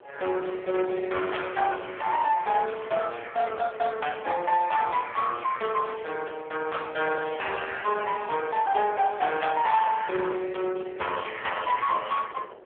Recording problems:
telephone audio; 320 Hz to 3.5 kHz, AMR-NB
distortion; soft clipping, signal-to-distortion ratio 14 dB
wind on the microphone; below 1.3 kHz, SNR 20 dB

